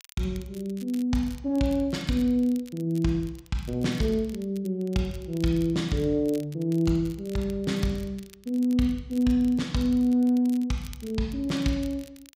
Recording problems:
crackling; vinyl, SNR 24 dB

